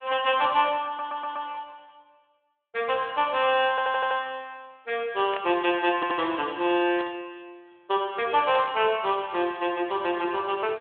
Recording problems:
telephone audio; 300 Hz to 3.5 kHz, Speex
stutter; at 1 s, at 3.5 s and at 6 s
static burst; at 5.5 s, at 7 s and at 8.5 s; peak -6 dB vs average level

